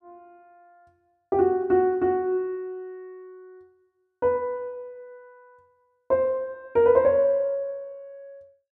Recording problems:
none

